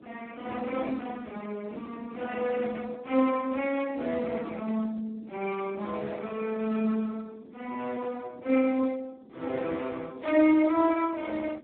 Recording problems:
phone line; 240 Hz to 3.7 kHz, Speex
wind on the microphone; below 410 Hz, SNR 20 dB

